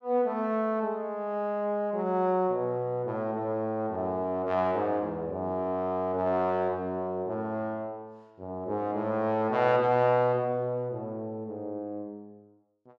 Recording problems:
none

